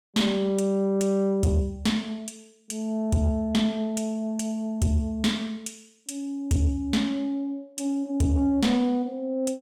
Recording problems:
distorted audio; soft clipping, signal-to-distortion ratio 12 dB

